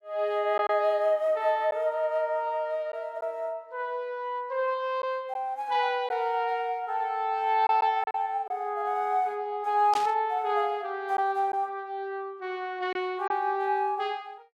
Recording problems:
packet loss; 1.9% of the sound replaced, filled with silence
burst of static; at 10 s; peak -4 dB vs average level

